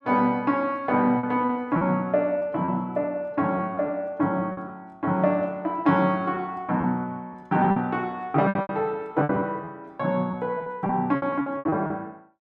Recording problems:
lost packets; 9% of the sound replaced, filled with repeated pitch periods

